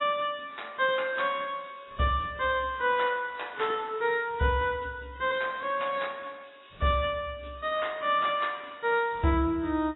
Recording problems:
lossy compression; AAC, log-spectral distance 5 dB, nothing above 3.2 kHz

